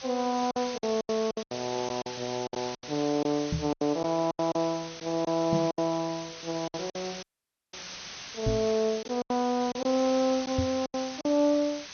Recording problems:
lossy codec; MP2, log-spectral distance 18 dB, nothing above 5.7 kHz
background hiss; slope +2 dB per octave, SNR 11 dB
lost packets; 12% of the sound replaced, filled with silence
microphone bump; 4 times, first at 3.5 s; peak +3 dB vs average level
dropout; at 7 s for 0.5 s

